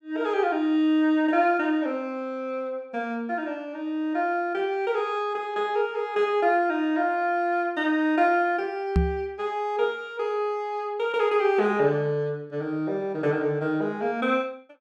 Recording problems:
knock on the microphone; at 9 s; peak +6 dB vs average level

